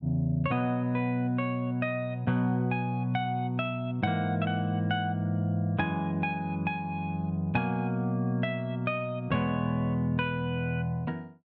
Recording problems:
none

